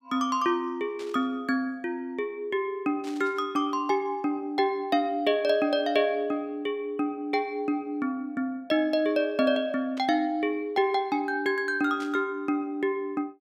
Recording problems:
burst of static; 4 times, first at 1 s; peak -12 dB vs average level

